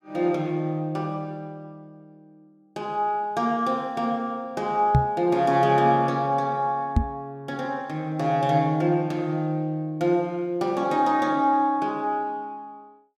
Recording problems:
microphone thump; at 5 s and at 7 s; peak +8 dB vs average level

